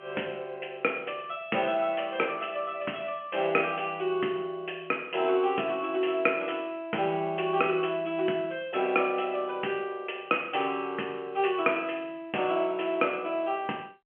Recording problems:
telephone audio; 240 Hz to 3.2 kHz, G.711

